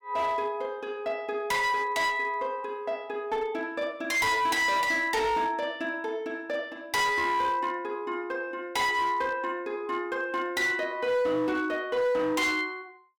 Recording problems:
distortion; hard clipping, uneven, signal-to-distortion ratio 11 dB

